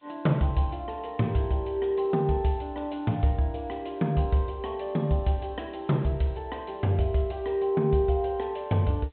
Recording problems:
treble cut off; nothing above 4 kHz
background hiss; SNR 42 dB

